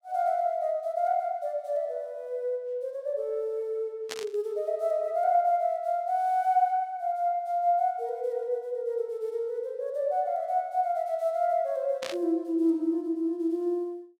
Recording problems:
burst of static; at 4 s and at 12 s; peak -3 dB vs average level

